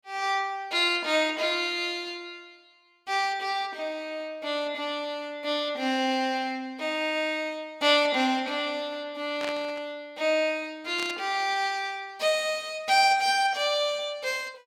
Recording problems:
static burst; at 9.5 s and at 11 s; peak -4 dB vs average level

